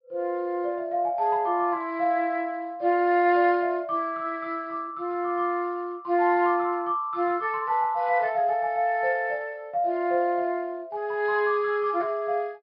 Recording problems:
treble cut off; nothing above 5.5 kHz

